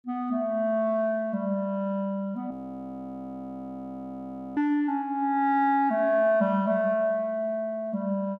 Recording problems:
audio freezing; at 2.5 s for 2 s

